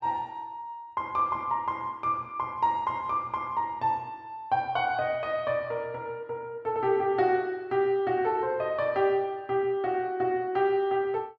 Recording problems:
none

